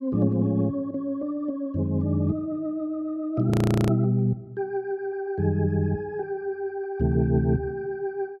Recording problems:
audio freezing; at 3.5 s

